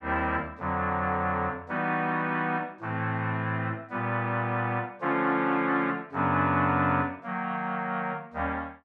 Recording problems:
none

